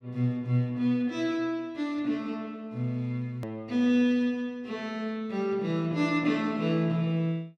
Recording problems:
hard cut with a click; at 3.5 s

